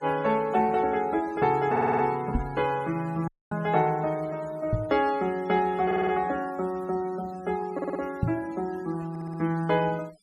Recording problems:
denoising artefacts; signal-to-artefact ratio 22 dB
stutter; 4 times, first at 1.5 s
microphone bump; at 2.5 s, at 4.5 s and at 8 s; peak +5 dB vs average level
audio cutting out; at 3.5 s

